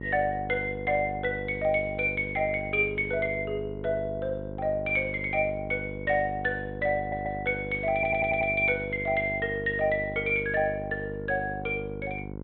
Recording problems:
treble cut off; nothing above 4 kHz
hum; 50 Hz, harmonics up to 1.1 kHz, SNR 10 dB
stutter; at 7 s and at 8 s

